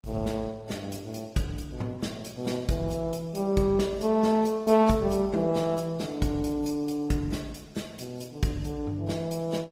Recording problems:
codec artefacts; AAC, then Opus, log-spectral distance 4 dB

